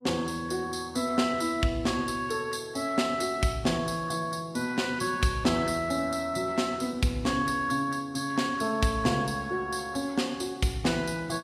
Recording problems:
lossy compression; Vorbis, log-spectral distance 3 dB, nothing above 14.7 kHz

